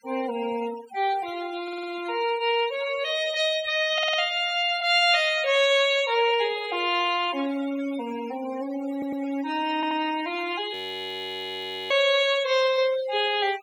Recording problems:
denoising artefacts; signal-to-artefact ratio 15 dB
stutter; 4 times, first at 1.5 s
audio freezing; at 11 s for 1 s

